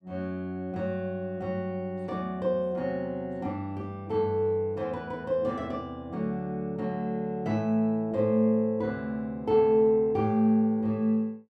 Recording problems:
none

